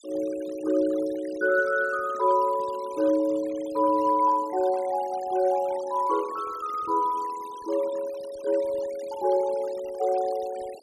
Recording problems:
denoising artefacts; signal-to-artefact ratio 20 dB

